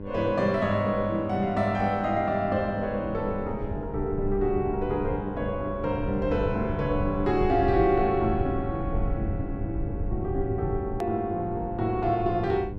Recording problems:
hum; 50 Hz, harmonics up to 1.1 kHz, SNR 12 dB
rumble; below 110 Hz, SNR 8 dB
click at an edit; at 11 s

